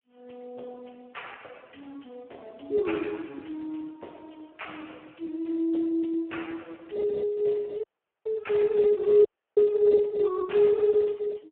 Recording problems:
telephone audio; 280 Hz to 3.4 kHz, Speex
dropout; at 8 s and at 9.5 s

